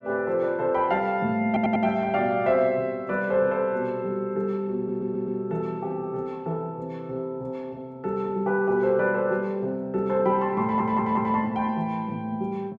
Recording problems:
audio stuttering; at 1.5 s, at 5 s and at 11 s

